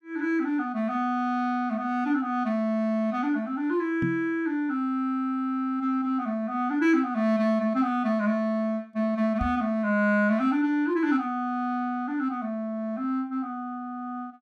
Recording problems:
knock on the microphone; at 4 s and at 9.5 s; peak +1 dB vs average level

